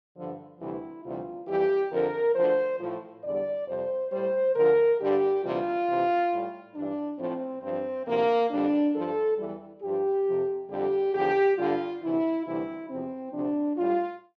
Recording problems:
none

